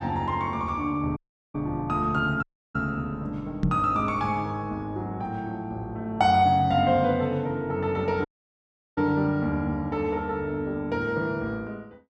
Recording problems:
audio cutting out; at 1 s, at 2.5 s and at 8.5 s for 0.5 s
microphone bump; at 3.5 s; peak +5 dB vs average level

